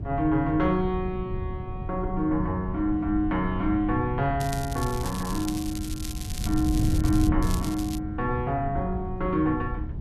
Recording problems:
wind noise; below 130 Hz, SNR 5 dB
crackling; from 4.5 to 7.5 s and at 7.5 s; loose cable, SNR 12 dB

